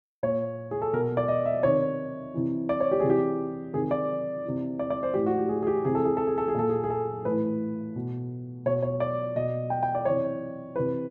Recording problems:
none

